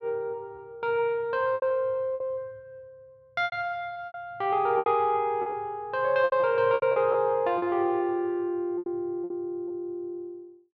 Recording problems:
lost packets; 9% of the sound replaced, filled with repeated pitch periods

